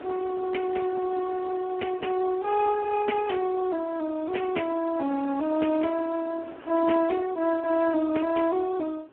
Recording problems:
phone line; 240 Hz to 3.1 kHz, Speex
wind noise; below 1.1 kHz, SNR 20 dB

